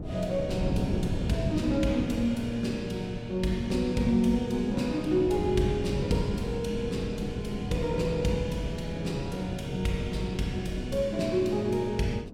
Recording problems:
wind on the microphone; below 260 Hz, SNR 7 dB

